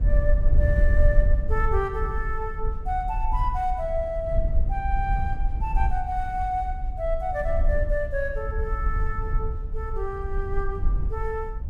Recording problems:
low-frequency rumble; below 60 Hz, SNR -2 dB

